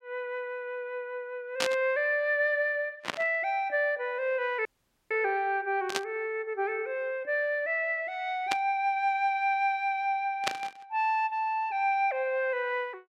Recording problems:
burst of static; 5 times, first at 1.5 s; peak +5 dB vs average level
dropout; at 4.5 s

